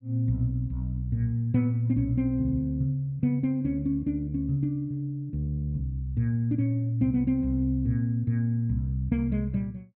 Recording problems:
none

